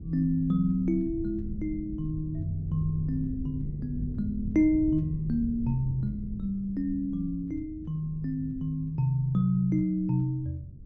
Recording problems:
rumble; below 150 Hz, SNR 11 dB

